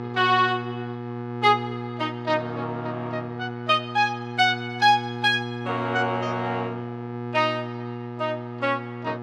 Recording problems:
hum; 60 Hz, harmonics up to 2.2 kHz, SNR 8 dB

